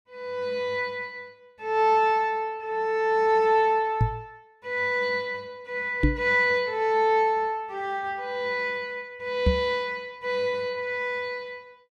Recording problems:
knock on the microphone; at 4 s, at 6 s and at 9.5 s; peak +7 dB vs average level

